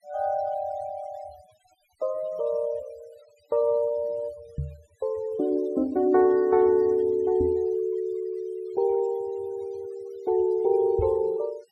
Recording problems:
noise reduction artefacts; signal-to-artefact ratio 28 dB
knock on the microphone; at 4.5 s, at 7.5 s and at 11 s; peak -2 dB vs average level

